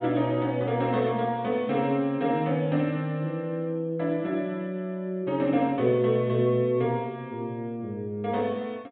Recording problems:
treble cut off; nothing above 4 kHz

